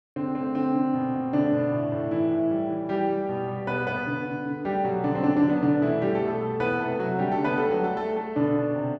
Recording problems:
none

